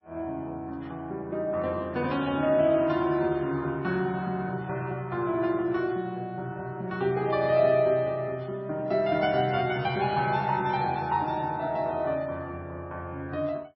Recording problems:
lossy compression; MP3, log-spectral distance 2 dB, nothing above 5.5 kHz

